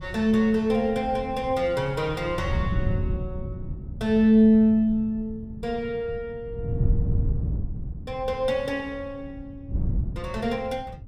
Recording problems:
wind on the microphone; below 130 Hz, SNR 8 dB

